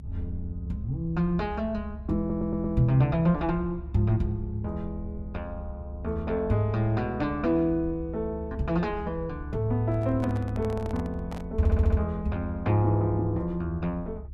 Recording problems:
rumble; below 72 Hz, strongest tone 70 Hz, SNR 11 dB
audio stuttering; at 2 s and at 12 s
microphone handling noise; from 10 to 11 s; peak -8 dB vs average level

